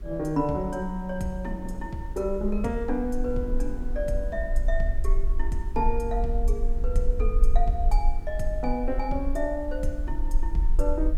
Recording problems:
mains hum; 50 Hz, harmonics up to 400 Hz, SNR 18 dB
hiss; SNR 28 dB
rumble; below 42 Hz, strongest tone 20 Hz, SNR 0 dB
wind noise; below 400 Hz, SNR 19 dB

